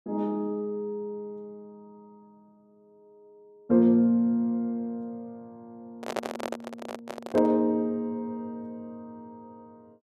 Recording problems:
handling noise; from 6 to 7.5 s; peak 0 dB vs average level

